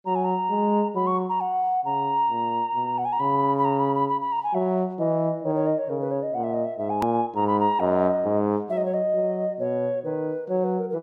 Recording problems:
click at an edit; at 7 s

